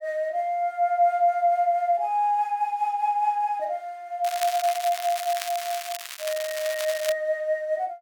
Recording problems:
crackle; from 4 to 7 s; loose cable, SNR 9 dB

